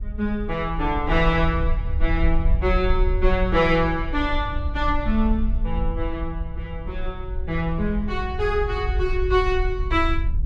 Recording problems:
low-frequency rumble; below 60 Hz, SNR 4 dB

